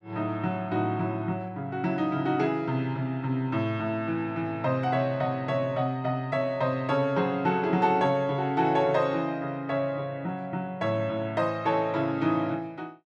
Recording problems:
none

